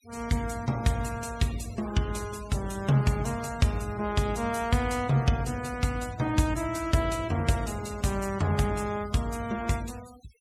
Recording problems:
denoising artefacts; signal-to-artefact ratio 18 dB

